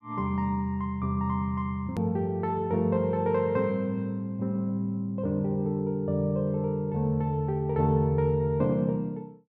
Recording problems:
hard cut with a click; at 2 s

